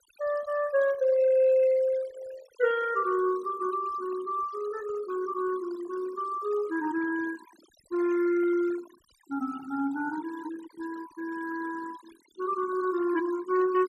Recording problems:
denoising artefacts; signal-to-artefact ratio 17 dB

